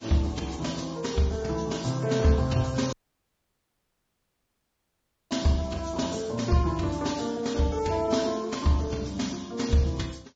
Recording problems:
lossy codec; Vorbis, then Vorbis, log-spectral distance 4 dB, nothing above 7.3 kHz
dropout; at 3 s for 2.5 s

